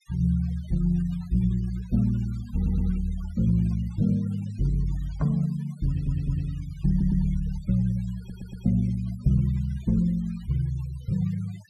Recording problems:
denoising artefacts; signal-to-artefact ratio 25 dB
stutter; 4 times, first at 2.5 s

